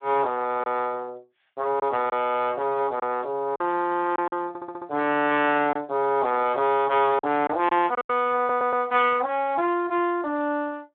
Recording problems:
telephone audio; 260 Hz to 3.6 kHz, Speex
packet loss; 4% of the sound replaced, filled with silence
audio stuttering; at 4.5 s and at 8.5 s

